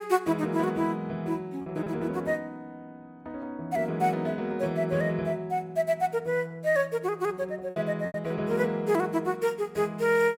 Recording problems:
lost packets; 3% of the sound replaced, filled with repeated pitch periods

